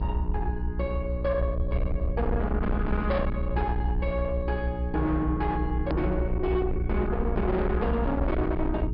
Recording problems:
treble cut off; nothing above 5.1 kHz
distortion; soft clipping, signal-to-distortion ratio 7 dB
electrical hum; 60 Hz, harmonics up to 420 Hz, SNR 4 dB
rumble; below 96 Hz, SNR 3 dB
hard cut with a click; at 6 s

